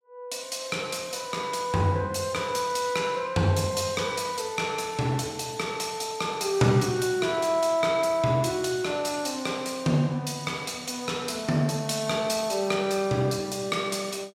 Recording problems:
none

